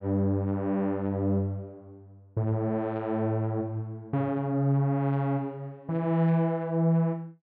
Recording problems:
none

